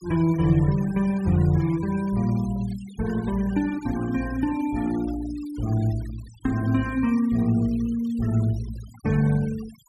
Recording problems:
noise reduction artefacts; signal-to-artefact ratio 21 dB

